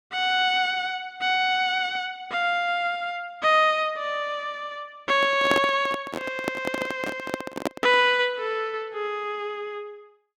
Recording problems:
microphone handling noise; from 5 to 8 s; peak +3 dB vs average level

